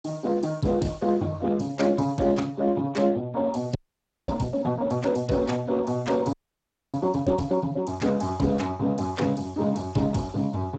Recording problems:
codec artefacts; Speex, log-spectral distance 4 dB, nothing above 7.8 kHz
frozen audio; at 4 s for 0.5 s and at 6.5 s for 0.5 s

